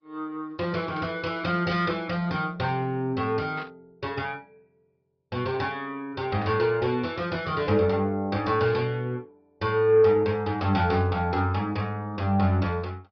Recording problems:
treble missing; nothing above 5 kHz
lossy compression; Opus, log-spectral distance 2 dB
static burst; 4 times, first at 1 s; peak -14 dB vs average level

